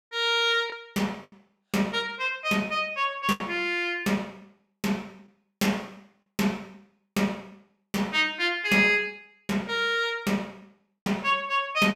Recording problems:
packet loss; 2% of the sound replaced, filled with the last packet

